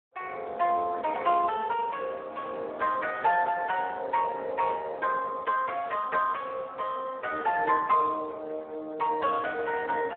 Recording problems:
phone line; 320 Hz to 2.8 kHz, Speex

